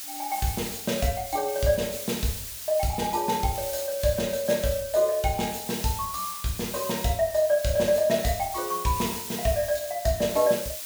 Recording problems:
hiss; slope +3 dB per octave, SNR 8 dB

